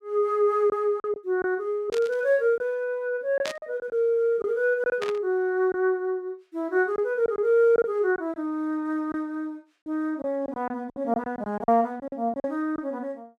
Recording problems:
lost packets; 7% of the sound replaced, filled with silence
burst of static; at 2 s, at 3.5 s and at 5 s; peak -3 dB vs average level

